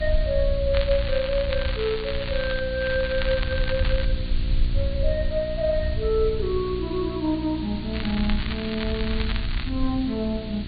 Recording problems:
treble cut off; nothing above 4.6 kHz
hum; 60 Hz, harmonics up to 720 Hz, SNR 9 dB
background hiss; SNR 14 dB
low-frequency rumble; below 68 Hz, SNR 4 dB
crackle; from 0.5 to 2.5 s, from 3 to 4 s and from 8 to 9.5 s; loose cable, SNR 8 dB

